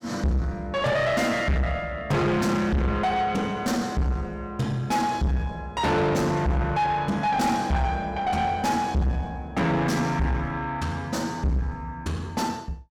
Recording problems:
distortion; soft clipping, signal-to-distortion ratio 6 dB

